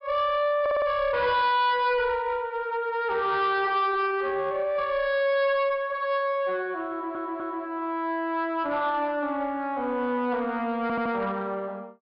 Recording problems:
low-pass filter; nothing above 5.5 kHz
distorted audio; soft clipping, signal-to-distortion ratio 11 dB
audio stuttering; at 0.5 s, at 7 s and at 11 s

